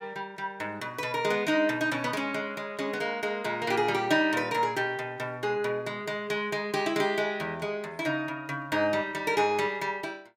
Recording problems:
none

